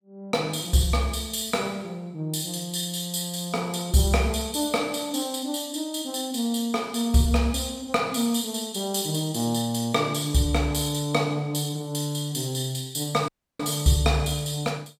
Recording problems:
dropout; at 13 s

